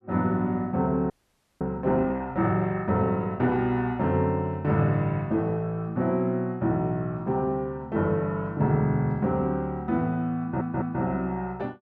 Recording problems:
audio freezing; at 1 s for 0.5 s
audio stuttering; at 10 s

